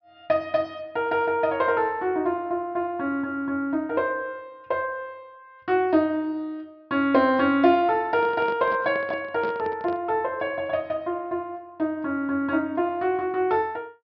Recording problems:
low-pass filter; nothing above 5.5 kHz
microphone handling noise; from 8 to 10 s; peak -6 dB vs average level

